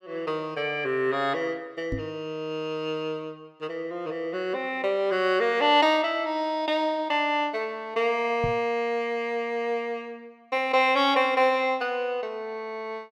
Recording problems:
microphone thump; at 2 s and at 8.5 s; peak -1 dB vs average level

